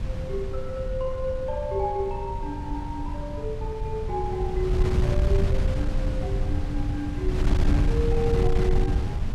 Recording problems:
wind noise; below 110 Hz, SNR -3 dB

